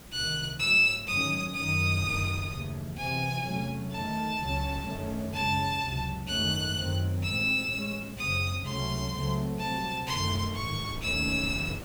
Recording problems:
hiss; SNR 20 dB
wind noise; below 440 Hz, SNR 20 dB

